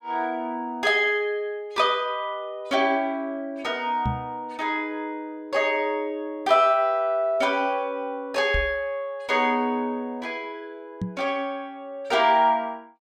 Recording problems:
microphone bump; at 4 s, at 8.5 s and at 11 s; peak +1 dB vs average level

